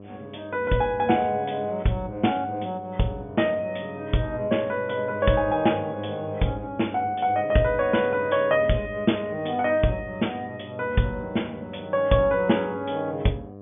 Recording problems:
treble cut off; nothing above 3.5 kHz
electrical hum; 50 Hz, harmonics up to 1.2 kHz, SNR 17 dB

